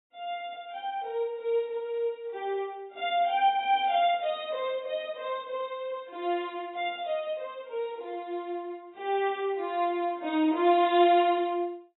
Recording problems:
lossy codec; AAC, log-spectral distance 2 dB, nothing above 3.2 kHz

